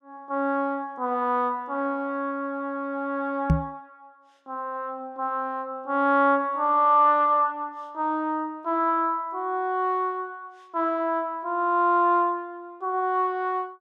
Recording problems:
microphone thump; at 3.5 s; peak +7 dB vs average level

